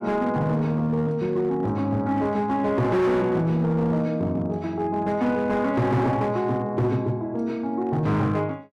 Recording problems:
distortion; hard clipping, signal-to-distortion ratio 11 dB

